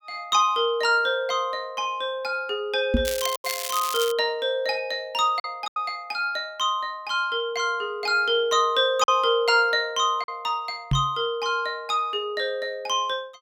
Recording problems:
lost packets; 2% of the sound replaced, filled with silence
microphone bump; at 3 s and at 11 s; peak +5 dB vs average level
crackle; from 3 to 4 s; loose cable, SNR 7 dB

